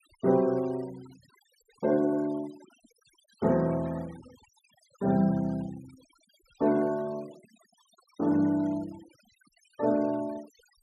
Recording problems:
noise reduction artefacts; signal-to-artefact ratio 25 dB

